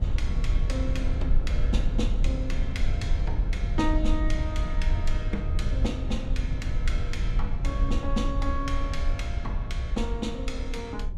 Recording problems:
rumble; below 68 Hz, SNR -5 dB

